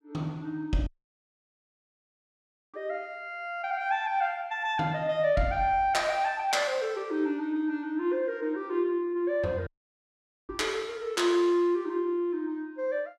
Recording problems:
audio cutting out; at 1 s for 2 s and at 9.5 s for 1 s

